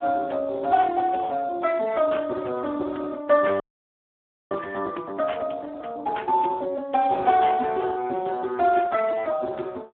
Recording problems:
telephone audio; 280 Hz to 3.6 kHz, Speex
audio freezing; at 3.5 s for 1 s

